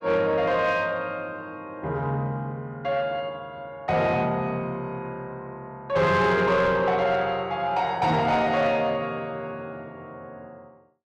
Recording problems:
distortion; soft clipping, signal-to-distortion ratio 12 dB

